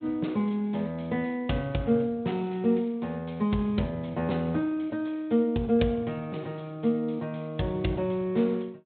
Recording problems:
low-pass filter; nothing above 3.9 kHz
codec artefacts; Speex, log-spectral distance 3 dB

